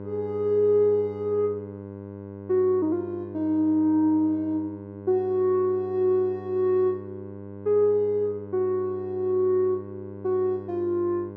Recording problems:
electrical hum; 50 Hz, harmonics up to 1.1 kHz, SNR 14 dB

